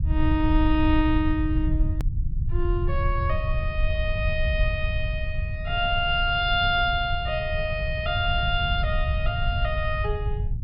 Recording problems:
treble cut off; nothing above 5.5 kHz
rumble; below 88 Hz, SNR 2 dB
click at an edit; at 2 s

